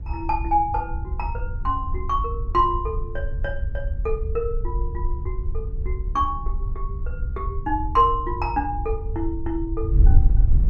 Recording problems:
wind noise; below 70 Hz, SNR 2 dB

